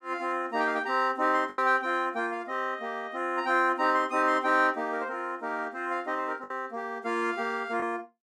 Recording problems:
lost packets; 2% of the sound replaced, filled with the last packet

